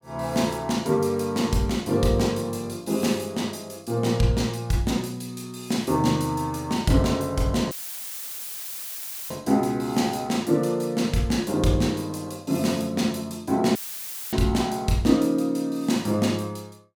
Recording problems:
audio cutting out; at 7.5 s for 1.5 s and at 14 s for 0.5 s; filled with static

